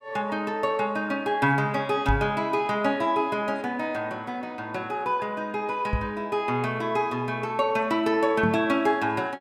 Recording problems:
microphone bump; at 2 s, at 6 s and at 8.5 s; peak +4 dB vs average level

